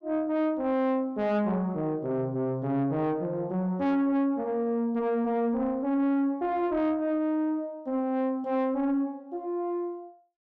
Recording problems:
distortion; soft clipping, signal-to-distortion ratio 11 dB

